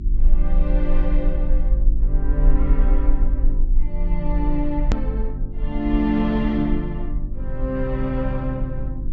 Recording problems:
low-pass filter; nothing above 8 kHz
hum; 50 Hz, harmonics up to 350 Hz, SNR 6 dB
rumble; below 38 Hz, strongest tone 22 Hz, SNR -1 dB
click at an edit; at 5 s

